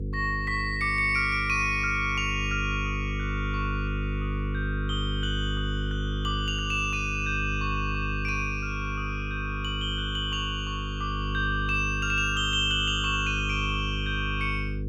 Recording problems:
electrical hum; 50 Hz, harmonics up to 500 Hz, SNR 4 dB

